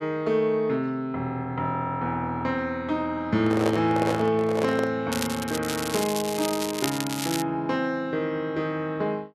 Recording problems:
handling noise; from 3.5 to 5 s; peak +4 dB vs average level
crackling; from 5 to 7.5 s; loose cable, SNR 6 dB

